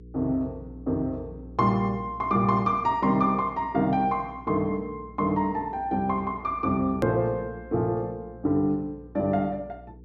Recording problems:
treble cut off; nothing above 8 kHz
hum; 60 Hz, harmonics up to 480 Hz, SNR 20 dB
edit click; at 7 s

